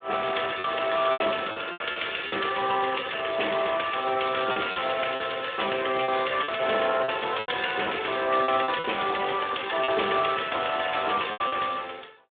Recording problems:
phone line; 260 Hz to 3.6 kHz, Speex
packet loss; 8% of the sound replaced, filled with repeated pitch periods
crackle; from 4 to 6.5 s and from 10 to 12 s; loose cable, SNR 22 dB

